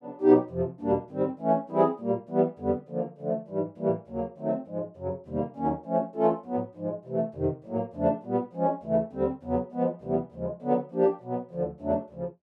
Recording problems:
none

